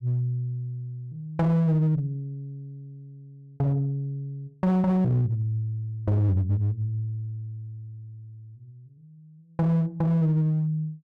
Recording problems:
distortion; hard clipping, uneven, signal-to-distortion ratio 9 dB

